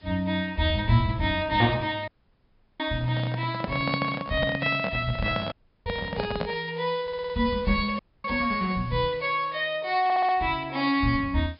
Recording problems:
treble missing; nothing above 5.5 kHz
background hiss; SNR 27 dB
audio cutting out; at 2 s for 0.5 s, at 5.5 s and at 8 s
handling noise; from 3 to 6.5 s; peak +1 dB vs average level
audio stuttering; at 7 s and at 10 s

